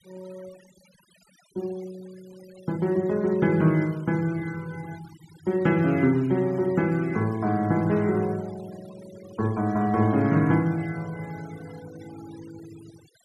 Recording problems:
denoising artefacts; signal-to-artefact ratio 24 dB

